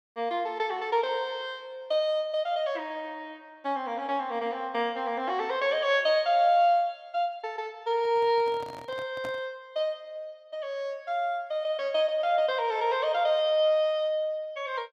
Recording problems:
microphone handling noise; from 8 to 9.5 s; peak -9 dB vs average level

